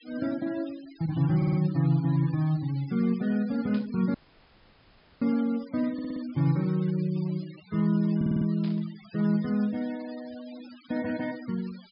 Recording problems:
treble cut off; nothing above 5.5 kHz
denoising artefacts; signal-to-artefact ratio 21 dB
audio stuttering; at 1.5 s, at 6 s and at 8 s
static burst; at 3.5 s and at 8.5 s; peak -15 dB vs average level
audio cutting out; at 4 s for 1 s

